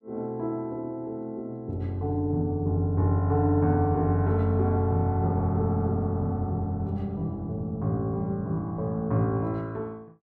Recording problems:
none

